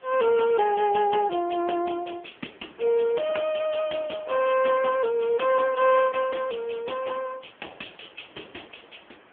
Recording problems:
phone line; 240 Hz to 3.3 kHz, AMR-NB
hiss; SNR 30 dB

